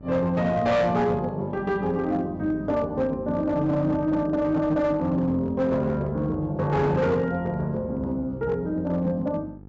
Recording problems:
low-pass filter; nothing above 7.6 kHz
distorted audio; hard clipping, signal-to-distortion ratio 12 dB
hum; 50 Hz, harmonics up to 900 Hz, SNR 19 dB

